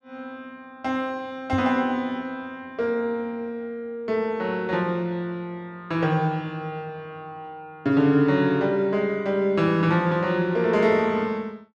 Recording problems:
microphone thump; at 1.5 s; peak -1 dB vs average level

